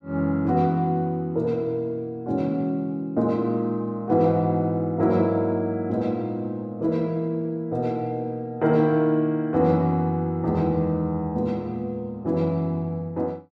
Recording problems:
none

